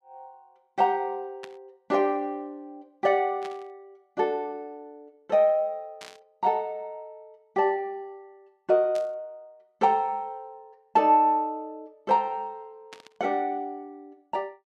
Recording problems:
static burst; 5 times, first at 1.5 s; peak -12 dB vs average level

